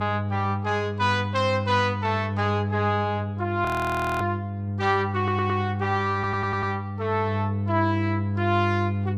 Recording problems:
hum; 50 Hz, harmonics up to 700 Hz, SNR 3 dB
frozen audio; at 3.5 s for 0.5 s
audio stuttering; at 5 s and at 6 s

